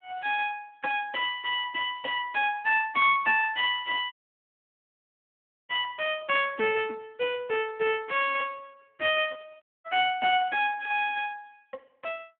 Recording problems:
phone line; 300 Hz to 3.5 kHz, Speex
audio cutting out; at 4 s for 1.5 s and at 9.5 s

